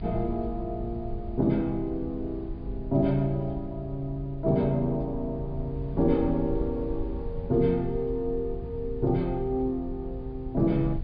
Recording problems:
treble cut off; nothing above 4.9 kHz
rumble; below 82 Hz, SNR 10 dB

